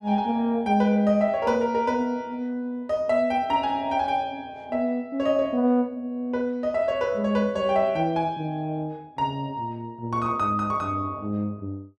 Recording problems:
none

